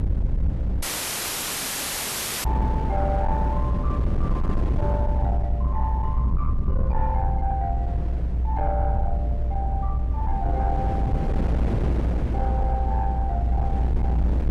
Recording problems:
distorted audio; soft clipping, signal-to-distortion ratio 12 dB
rumble; below 74 Hz, strongest tone 60 Hz, SNR -6 dB
wind on the microphone; below 330 Hz, SNR 0 dB
audio cutting out; at 1 s for 1.5 s

